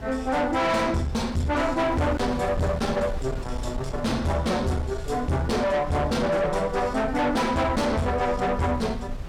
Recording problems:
distorted audio; soft clipping, signal-to-distortion ratio 6 dB
wind noise; below 240 Hz, SNR 11 dB

